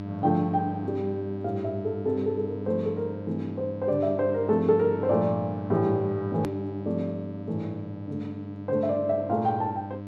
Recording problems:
mains hum; 50 Hz, harmonics up to 1.3 kHz, SNR 9 dB
click at an edit; at 6.5 s

